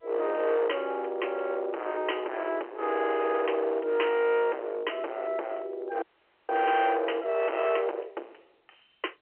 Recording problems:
telephone audio; 300 Hz to 3.2 kHz, G.711
distorted audio; hard clipping, uneven, signal-to-distortion ratio 6 dB
audio freezing; at 6 s

